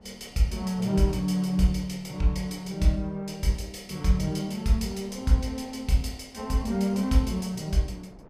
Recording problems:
wind noise; below 490 Hz, SNR 25 dB

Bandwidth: 15.5 kHz